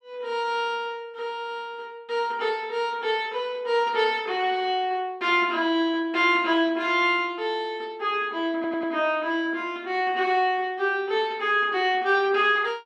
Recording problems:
stutter; at 8.5 s

